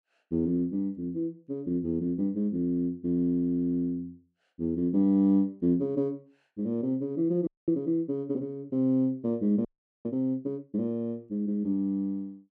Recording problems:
frozen audio; at 7.5 s and at 9.5 s

